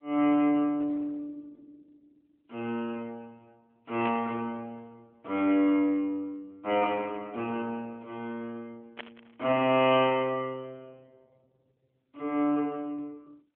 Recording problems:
telephone audio; 240 Hz to 3.7 kHz, AMR-NB
static burst; at 4 s and at 9 s; peak -6 dB vs average level

